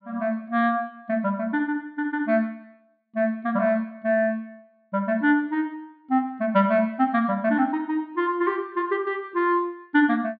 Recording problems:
treble cut off; nothing above 4.7 kHz

